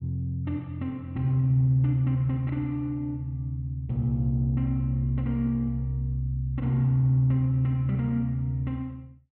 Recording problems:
treble cut off; nothing above 4.1 kHz

